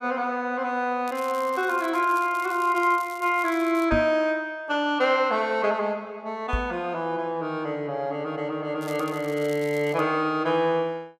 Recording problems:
crackle; from 1 to 4 s and from 9 to 10 s; loose cable, SNR 21 dB
microphone thump; at 4 s and at 6.5 s; peak +1 dB vs average level

